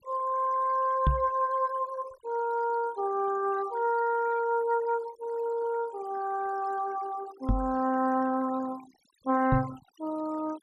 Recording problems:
noise reduction artefacts; signal-to-artefact ratio 19 dB
knock on the microphone; at 1 s, at 7.5 s and at 9.5 s; peak +7 dB vs average level

